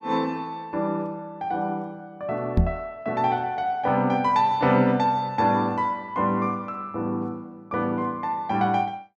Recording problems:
microphone thump; at 2.5 s; peak +8 dB vs average level

